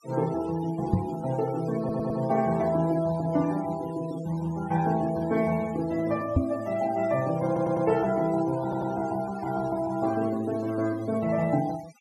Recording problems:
noise reduction artefacts; signal-to-artefact ratio 19 dB
microphone thump; at 1 s and at 6.5 s; peak +8 dB vs average level
audio stuttering; at 2 s, at 7.5 s and at 8.5 s

